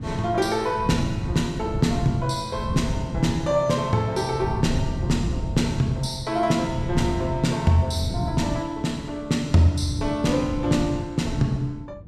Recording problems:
wind on the microphone; below 170 Hz, SNR 7 dB

